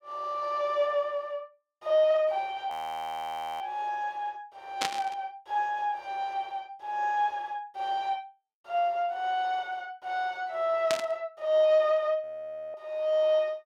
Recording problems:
frozen audio; at 2.5 s for 1 s and at 12 s for 0.5 s
burst of static; at 5 s and at 11 s; peak +4 dB vs average level

